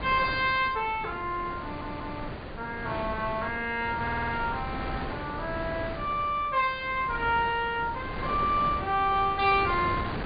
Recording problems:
treble missing; nothing above 4.8 kHz
wind on the microphone; below 1 kHz, SNR 9 dB
stutter; at 1.5 s and at 4 s

